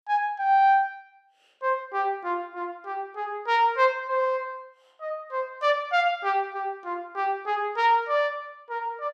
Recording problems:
none

